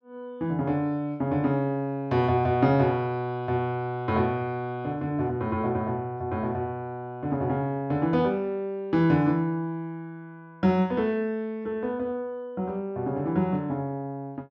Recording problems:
none

